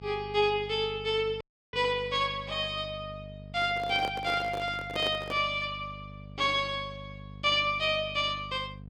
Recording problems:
mains hum; 50 Hz, harmonics up to 500 Hz, SNR 17 dB
dropout; at 1.5 s
handling noise; from 3.5 to 5.5 s; peak -4 dB vs average level

